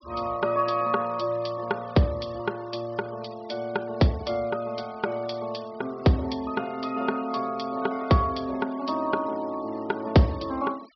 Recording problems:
treble missing; nothing above 5.5 kHz
noise reduction artefacts; signal-to-artefact ratio 23 dB

